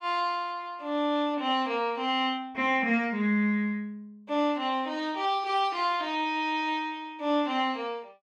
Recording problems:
none

